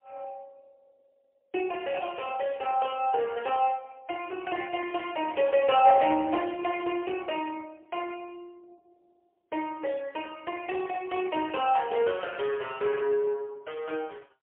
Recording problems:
phone line; 280 Hz to 3.3 kHz, AMR-NB, then MP3

